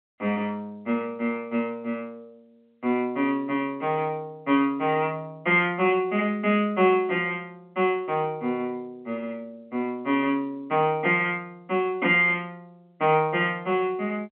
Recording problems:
phone line; 190 Hz to 3.3 kHz, G.711

